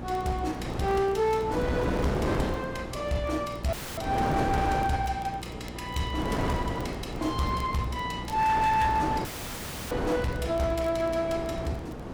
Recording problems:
distorted audio; hard clipping, uneven, signal-to-distortion ratio 11 dB
hum; 60 Hz, harmonics up to 780 Hz, SNR 14 dB
wind noise; below 720 Hz, SNR 5 dB
crackle; vinyl, SNR 28 dB
dropout; at 3.5 s and at 9.5 s for 0.5 s

